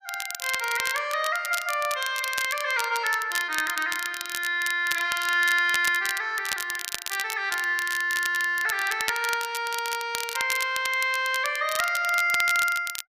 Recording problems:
crackling; vinyl, SNR 8 dB

